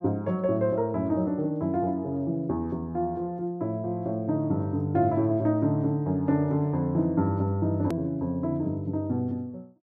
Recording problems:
edit click; at 8 s

